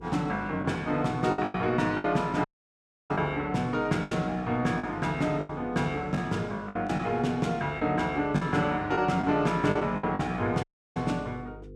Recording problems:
mains hum; 50 Hz, harmonics up to 500 Hz, SNR 21 dB
lost packets; 8% of the sound replaced, filled with the last packet
dropout; at 2.5 s for 0.5 s and at 11 s

